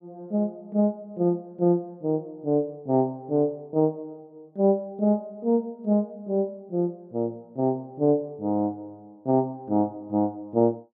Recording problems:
none

